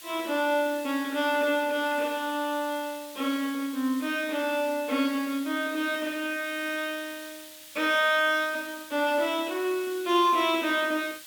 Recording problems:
background hiss; SNR 16 dB

